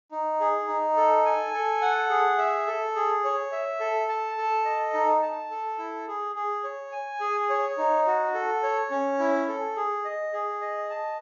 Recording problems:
treble cut off; nothing above 7 kHz

